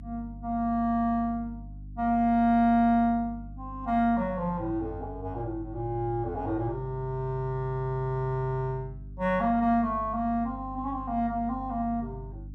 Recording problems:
hum; 50 Hz, harmonics up to 300 Hz, SNR 15 dB

